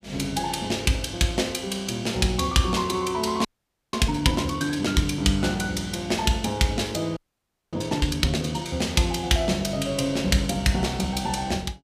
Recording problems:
audio freezing; at 3.5 s and at 7 s for 0.5 s

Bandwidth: 15 kHz